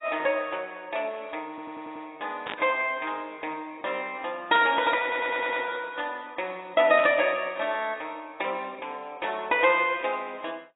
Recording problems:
lossy codec; AAC, log-spectral distance 4 dB, nothing above 3.3 kHz
stutter; at 1.5 s and at 5 s
static burst; at 2.5 s, at 4.5 s and at 7 s; peak -3 dB vs average level

